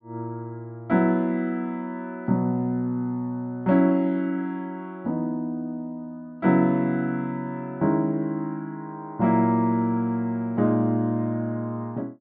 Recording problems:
treble cut off; nothing above 5.2 kHz

